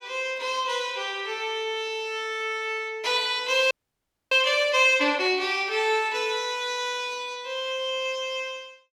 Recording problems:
audio freezing; at 3.5 s for 0.5 s

